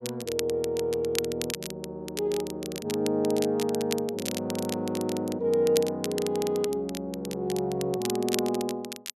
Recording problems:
crackle; vinyl, SNR 9 dB

